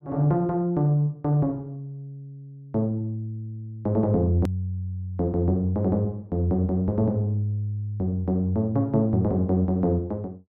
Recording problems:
click at an edit; at 4.5 s

